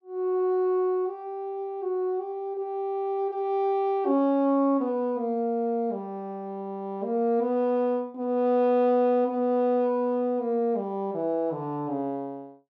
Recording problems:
none

